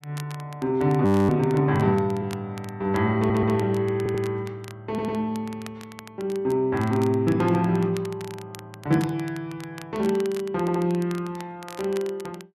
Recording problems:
crackling; vinyl, SNR 21 dB
audio freezing; at 1 s
stutter; 4 times, first at 3 s

